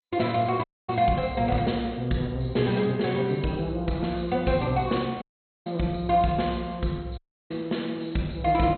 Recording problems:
lossy codec; MP2, log-spectral distance 4 dB, nothing above 4.2 kHz
audio cutting out; at 0.5 s, at 5 s and at 7 s

